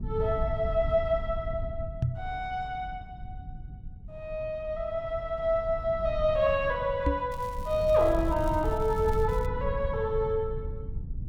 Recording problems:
low-frequency rumble; below 100 Hz, SNR 9 dB
microphone bump; at 2 s and at 7 s; peak +4 dB vs average level
crackle; from 7.5 to 9.5 s; loose cable, SNR 24 dB

